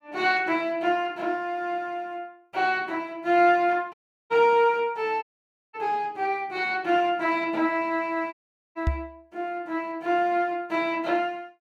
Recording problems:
audio cutting out; at 4 s, at 5 s for 0.5 s and at 8.5 s
knock on the microphone; at 9 s; peak +4 dB vs average level

